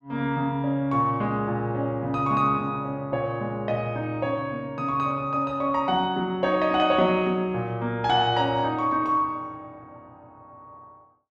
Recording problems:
none

